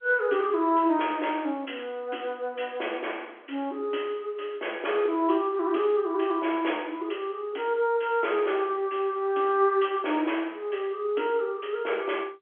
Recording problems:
telephone audio; 260 Hz to 3.4 kHz, G.711

